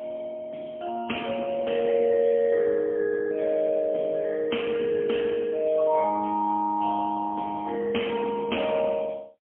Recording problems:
telephone audio; 240 Hz to 3.2 kHz, AMR-NB, then MP3

